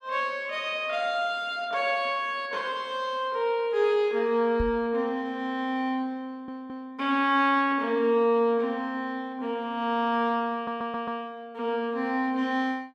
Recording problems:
microphone thump; at 4.5 s; peak -1 dB vs average level
stutter; at 6.5 s and at 11 s

